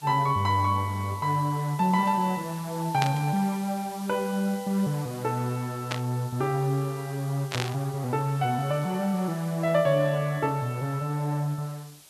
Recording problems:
background hiss; SNR 19 dB
burst of static; at 3 s, at 6 s and at 7.5 s; peak +1 dB vs average level

